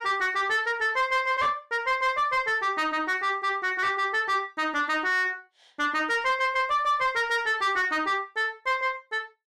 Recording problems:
distortion; soft clipping, signal-to-distortion ratio 11 dB

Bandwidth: 14.5 kHz